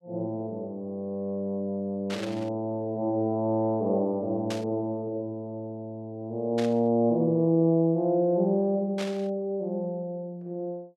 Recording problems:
burst of static; 4 times, first at 2 s; peak -5 dB vs average level

